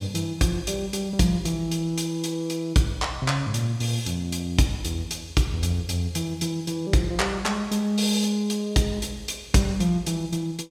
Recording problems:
none

